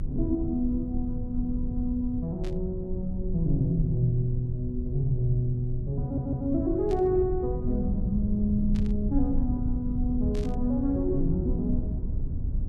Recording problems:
rumble; below 96 Hz, strongest tone 24 Hz, SNR 4 dB
burst of static; 4 times, first at 2.5 s; peak -13 dB vs average level
stutter; at 6 s

